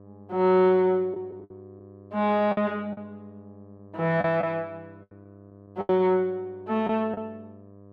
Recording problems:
hum; 50 Hz, harmonics up to 1.2 kHz, SNR 24 dB
lost packets; 7% of the sound replaced, filled with the last packet

